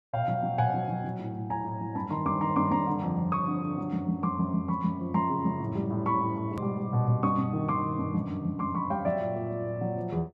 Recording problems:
hard cut with a click; at 6.5 s

